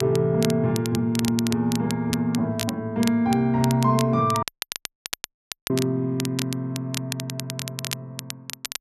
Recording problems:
crackling; vinyl, SNR 10 dB
audio cutting out; at 4.5 s for 1.5 s

